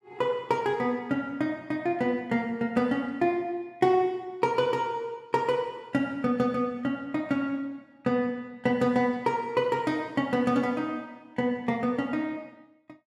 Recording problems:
none

